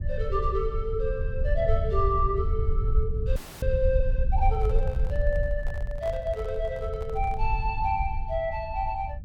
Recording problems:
rumble; below 68 Hz, SNR 0 dB
frozen audio; at 3.5 s
handling noise; from 4.5 to 7.5 s; peak -8 dB vs average level

